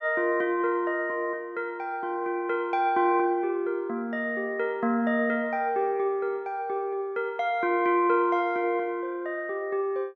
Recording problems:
none

